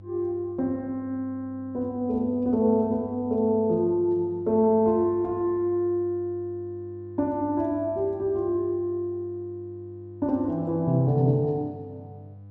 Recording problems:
hum; 50 Hz, harmonics up to 500 Hz, SNR 19 dB

